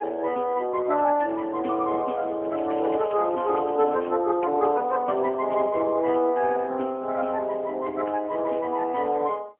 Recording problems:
phone line; 240 Hz to 3.1 kHz, AMR-NB, then MP3
crackle; from 2.5 to 4 s; loose cable, SNR 27 dB

